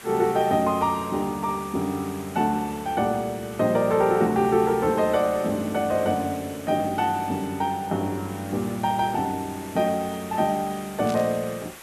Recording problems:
hiss; SNR 17 dB
burst of static; at 11 s; peak -9 dB vs average level

